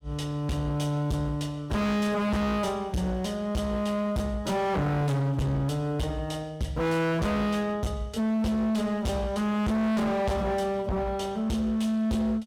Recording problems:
distorted audio; hard clipping, signal-to-distortion ratio 6 dB

